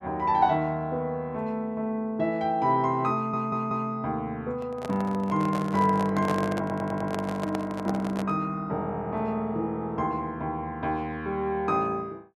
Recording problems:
stutter; at 3 s and at 6.5 s
microphone handling noise; from 4.5 to 8.5 s; peak -1 dB vs average level

